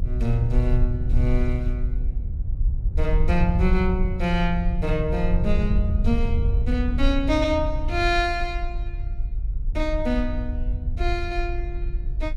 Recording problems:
rumble; below 54 Hz, SNR 3 dB
wind noise; below 82 Hz, SNR 3 dB

